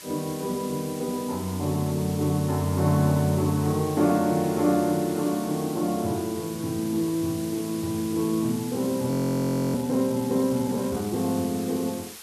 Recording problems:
background hiss; slope +1 dB per octave, SNR 14 dB
audio freezing; at 9 s for 0.5 s

